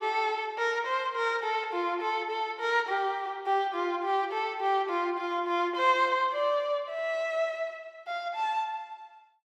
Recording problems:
none

